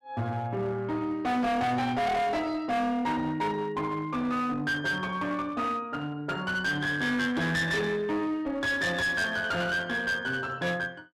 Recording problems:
distorted audio; hard clipping, uneven, signal-to-distortion ratio 7 dB

